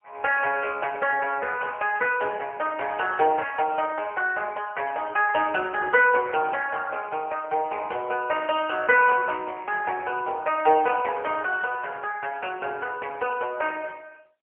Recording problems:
phone line; 320 Hz to 3.1 kHz, AMR-NB, then MP3

